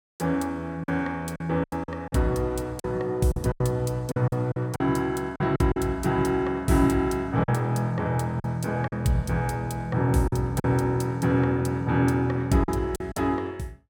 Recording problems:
lost packets; 7% of the sound replaced, filled with silence

